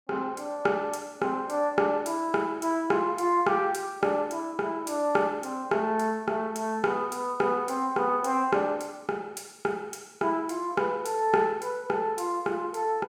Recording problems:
none

